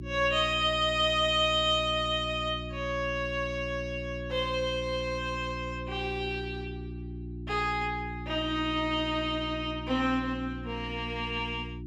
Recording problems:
electrical hum; 60 Hz, harmonics up to 360 Hz, SNR 10 dB

